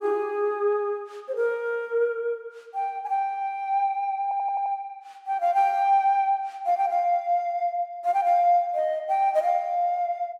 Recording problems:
audio stuttering; at 4 s

